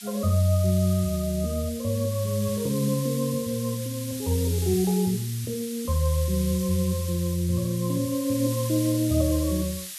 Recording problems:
background hiss; SNR 11 dB

